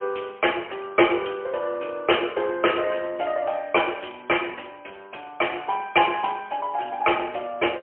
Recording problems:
telephone audio; 300 Hz to 3.1 kHz, AMR-NB, then MP3

